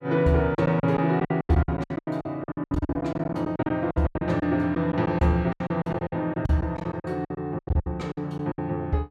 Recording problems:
packet loss; 20% of the sound replaced, filled with silence

